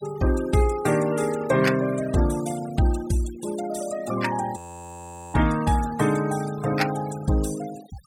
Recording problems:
noise reduction artefacts; signal-to-artefact ratio 14 dB
frozen audio; at 4.5 s for 1 s

